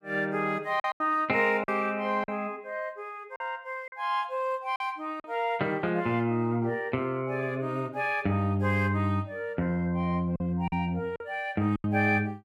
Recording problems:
packet loss; 5% of the sound replaced, filled with silence

